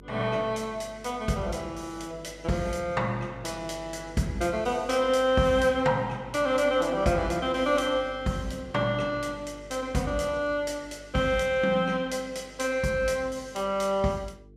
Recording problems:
hum; 50 Hz, harmonics up to 450 Hz, SNR 22 dB

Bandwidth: 14.5 kHz